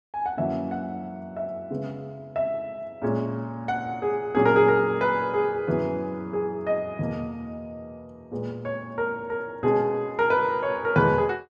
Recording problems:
none

